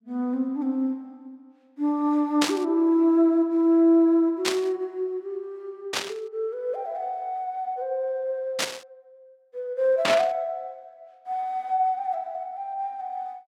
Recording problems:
static burst; 5 times, first at 2.5 s; peak +4 dB vs average level

